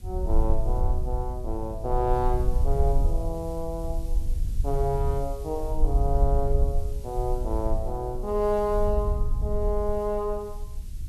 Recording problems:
background hiss; slope +3 dB per octave, SNR 24 dB
rumble; below 58 Hz, SNR 0 dB

